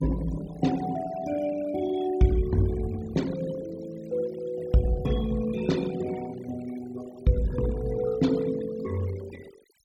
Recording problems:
noise reduction artefacts; signal-to-artefact ratio 17 dB

